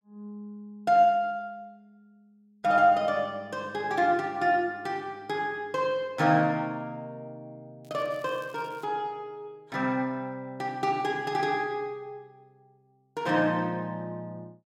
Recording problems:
crackle; from 8 to 9 s; loose cable, SNR 30 dB

